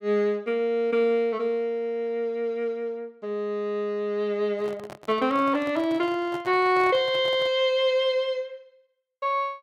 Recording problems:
handling noise; from 4.5 to 7.5 s; peak -10 dB vs average level

